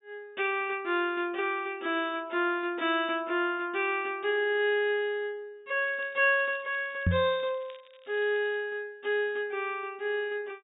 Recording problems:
low-pass filter; nothing above 4 kHz
crackle; from 6 to 8.5 s; loose cable, SNR 28 dB
knock on the microphone; at 7 s; peak +6 dB vs average level

